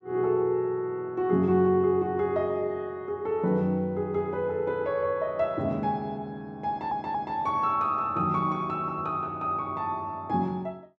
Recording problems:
audio stuttering; at 6.5 s

